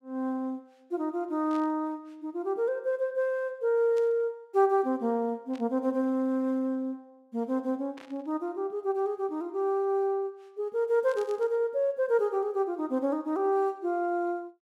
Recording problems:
burst of static; 5 times, first at 1.5 s; peak -16 dB vs average level

